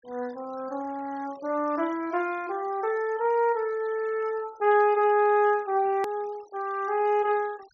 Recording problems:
treble missing; nothing above 6.9 kHz
noise reduction artefacts; signal-to-artefact ratio 26 dB
click at an edit; at 6 s

